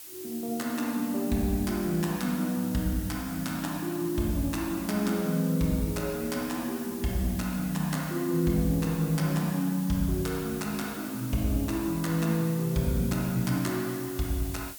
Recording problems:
hiss; slope +2 dB per octave, SNR 12 dB

